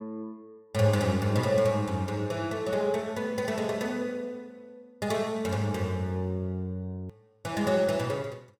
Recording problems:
click at an edit; at 7 s

